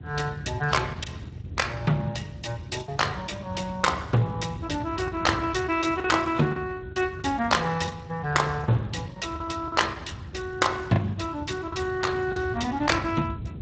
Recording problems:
lossy codec; AAC, then Speex, log-spectral distance 4 dB, nothing above 7.8 kHz
wind noise; below 160 Hz, SNR 11 dB
lost packets; 6% of the sound replaced, filled with the last packet

